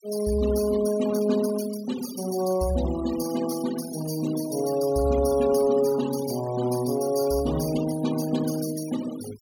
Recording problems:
noise reduction artefacts; signal-to-artefact ratio 14 dB

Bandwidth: 17.5 kHz